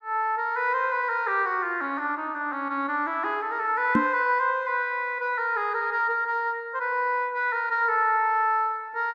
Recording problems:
microphone bump; at 4 s; peak +6 dB vs average level

